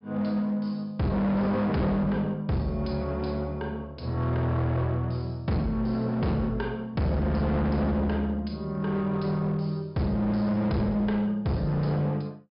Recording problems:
low-pass filter; nothing above 5.5 kHz
distortion; hard clipping, signal-to-distortion ratio 7 dB

